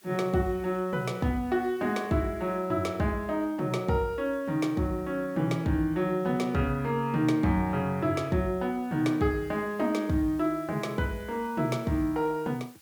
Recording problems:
hiss; slope 0 dB per octave, SNR 27 dB

